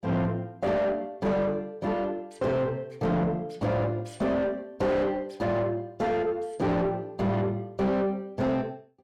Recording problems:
distortion; soft clipping, signal-to-distortion ratio 5 dB

